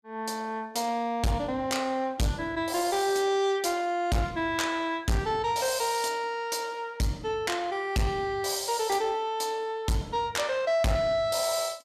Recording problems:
distortion; soft clipping, signal-to-distortion ratio 7 dB

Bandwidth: 14.5 kHz